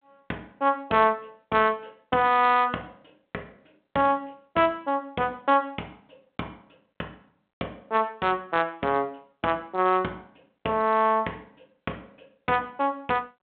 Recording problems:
phone line; 260 Hz to 3.7 kHz, G.726

